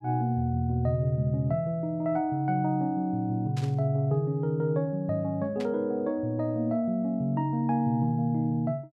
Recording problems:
static burst; at 3.5 s and at 5.5 s; peak -11 dB vs average level

